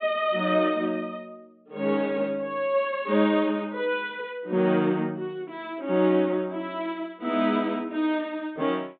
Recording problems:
low-pass filter; nothing above 4 kHz

